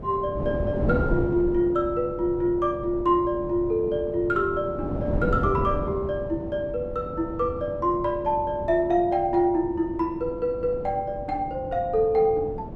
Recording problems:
wind on the microphone; below 360 Hz, SNR 8 dB

